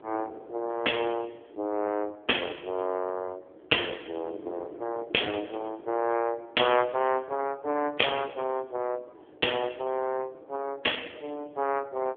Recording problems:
telephone audio; 280 Hz to 3.4 kHz, AMR-NB
wind noise; below 510 Hz, SNR 20 dB

